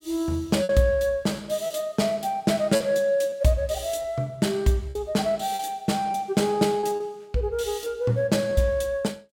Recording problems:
packet loss; 5% of the sound replaced, filled with repeated pitch periods

